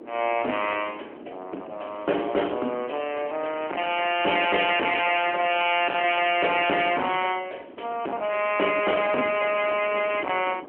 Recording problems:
phone line; 260 Hz to 3.2 kHz, AMR-NB
distorted audio; hard clipping, signal-to-distortion ratio 10 dB
wind noise; below 600 Hz, SNR 20 dB
crackling; from 2 to 5.5 s and from 5.5 to 7.5 s; loose cable, SNR 27 dB

